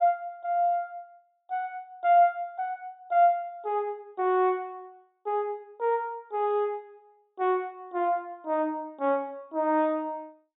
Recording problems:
treble cut off; nothing above 4 kHz

